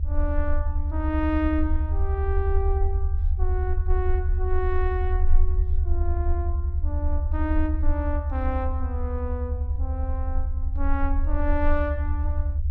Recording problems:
rumble; below 76 Hz, SNR -5 dB

